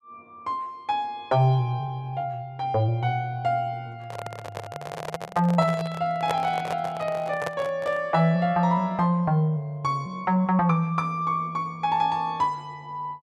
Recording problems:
microphone handling noise; from 4 to 8 s; peak +1 dB vs average level

